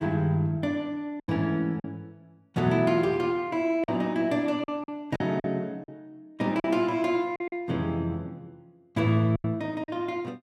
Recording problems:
lost packets; 6% of the sound replaced, filled with silence

